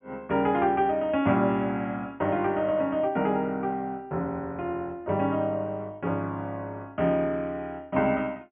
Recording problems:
treble cut off; nothing above 3.2 kHz

